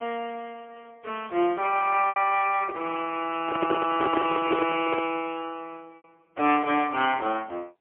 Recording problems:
telephone audio; 300 Hz to 3.3 kHz, AMR-NB, then MP3
lost packets; 2% of the sound replaced, filled with repeated pitch periods
handling noise; from 3.5 to 5 s; peak +5 dB vs average level

